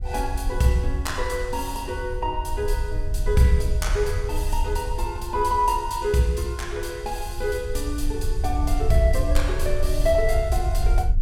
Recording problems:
low-frequency rumble; below 62 Hz, SNR 3 dB

